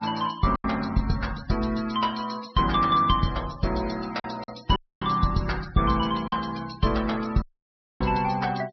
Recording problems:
treble cut off; nothing above 5.5 kHz
denoising artefacts; signal-to-artefact ratio 17 dB
packet loss; 4% of the sound replaced, filled with silence
dropout; at 5 s and at 7.5 s for 0.5 s

